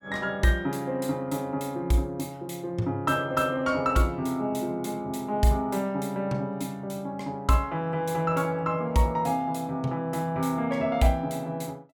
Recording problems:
none

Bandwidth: 17 kHz